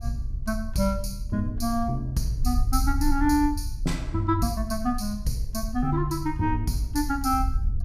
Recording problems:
wind on the microphone; below 64 Hz, SNR 5 dB

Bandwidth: 15.5 kHz